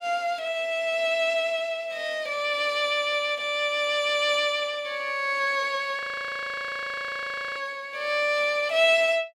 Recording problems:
frozen audio; at 6 s for 1.5 s

